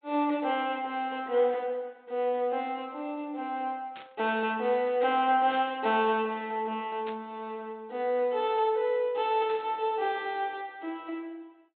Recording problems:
treble cut off; nothing above 4 kHz
static burst; 4 times, first at 4 s; peak -10 dB vs average level

